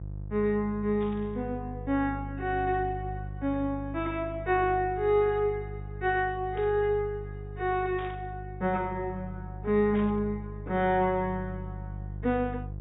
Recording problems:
low-pass filter; nothing above 4 kHz
electrical hum; 50 Hz, harmonics up to 500 Hz, SNR 10 dB
burst of static; 4 times, first at 1 s; peak -12 dB vs average level

